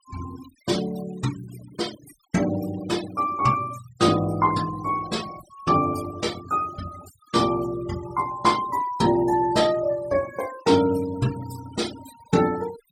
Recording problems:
denoising artefacts; signal-to-artefact ratio 16 dB

